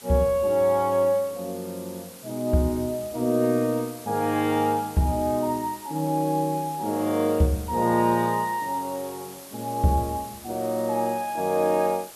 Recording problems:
background hiss; slope -2 dB per octave, SNR 17 dB

